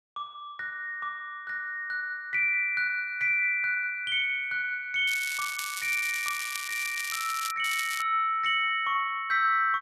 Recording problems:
crackling; from 5 to 7.5 s and at 7.5 s; loose cable, SNR 8 dB

